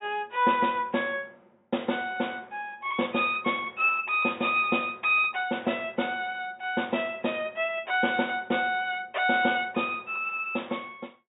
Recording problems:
treble cut off; nothing above 4 kHz

